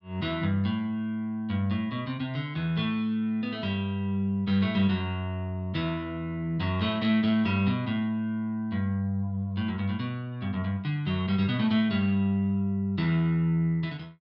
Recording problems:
none

